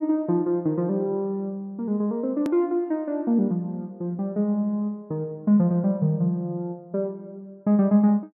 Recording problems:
edit click; at 2.5 s

